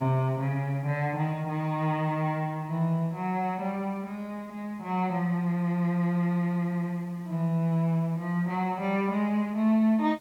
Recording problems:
background hiss; SNR 30 dB

